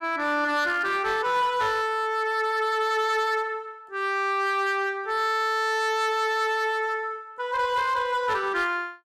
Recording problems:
distorted audio; hard clipping, signal-to-distortion ratio 11 dB

